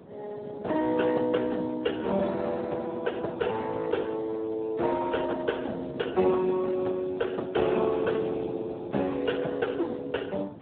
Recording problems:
phone line; 240 Hz to 2.8 kHz, Speex
wind noise; below 490 Hz, SNR 16 dB

